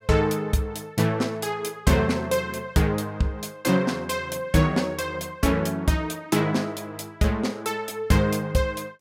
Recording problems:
none

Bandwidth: 16 kHz